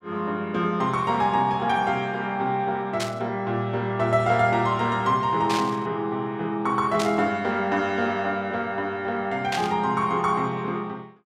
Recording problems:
burst of static; 4 times, first at 3 s; peak -1 dB vs average level

